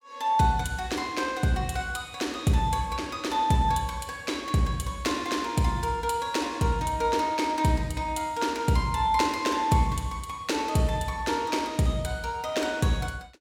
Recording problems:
none

